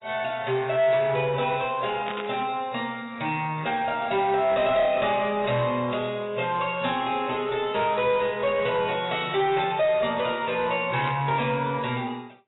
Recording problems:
lossy codec; AAC, log-spectral distance 5 dB, nothing above 3.8 kHz
distortion; soft clipping, signal-to-distortion ratio 12 dB
burst of static; at 2 s and at 11 s; peak -7 dB vs average level

